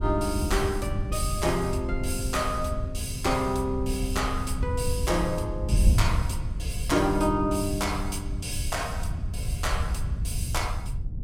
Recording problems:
wind noise; below 100 Hz, SNR 2 dB

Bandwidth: 16 kHz